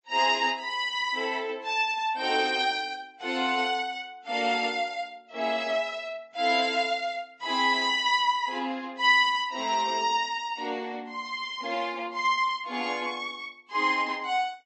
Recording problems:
lossy codec; MP3, then Vorbis, log-spectral distance 3 dB, nothing above 8 kHz

